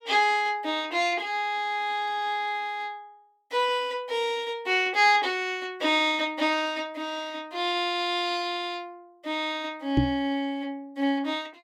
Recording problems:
knock on the microphone; at 10 s; peak +7 dB vs average level

